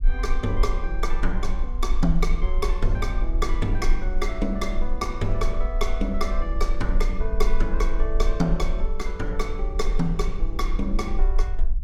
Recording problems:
rumble; below 38 Hz, strongest tone 18 Hz, SNR -1 dB

